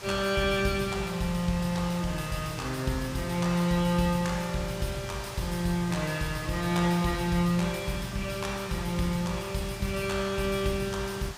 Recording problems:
hiss; SNR 13 dB

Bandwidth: 15.5 kHz